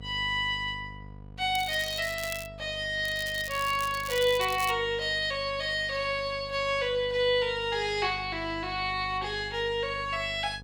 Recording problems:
hum; 50 Hz, harmonics up to 950 Hz, SNR 18 dB
crackle; at 1.5 s and from 3 to 4.5 s; loose cable, SNR 12 dB

